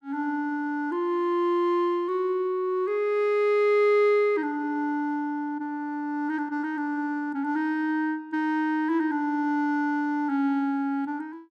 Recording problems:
none

